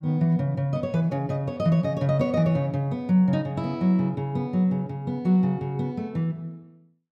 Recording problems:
none

